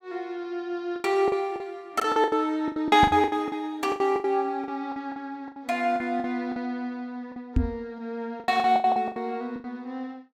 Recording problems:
packet loss; 15% of the sound replaced, filled with the last packet
microphone bump; at 3 s and at 7.5 s; peak +7 dB vs average level

